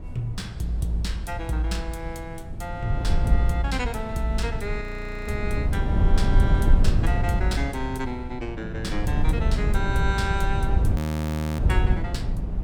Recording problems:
wind noise; below 100 Hz, SNR -3 dB
audio freezing; at 5 s and at 11 s for 0.5 s

